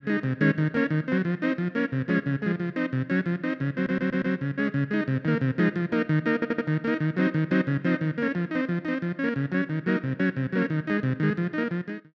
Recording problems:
audio stuttering; at 4 s and at 6.5 s

